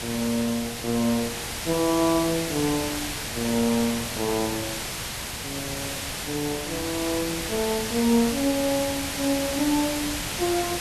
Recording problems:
background hiss; slope -1 dB per octave, SNR 3 dB

